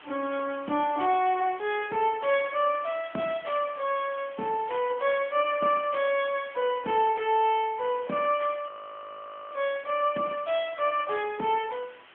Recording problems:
telephone audio; 190 Hz to 3.3 kHz, AMR-NB
hiss; SNR 22 dB
frozen audio; at 8.5 s for 1 s

